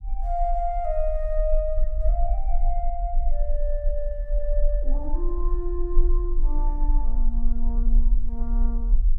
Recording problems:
low-frequency rumble; below 36 Hz, strongest tone 22 Hz, SNR -5 dB

